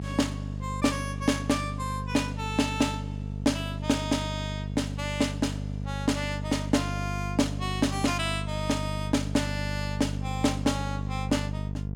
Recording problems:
hum; 50 Hz, harmonics up to 500 Hz, SNR 4 dB

